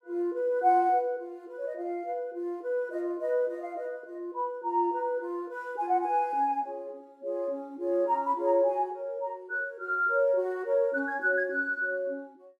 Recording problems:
none

